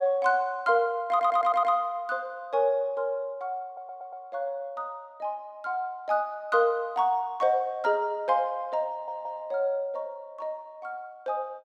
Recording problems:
stutter; at 1 s, at 3.5 s and at 9 s

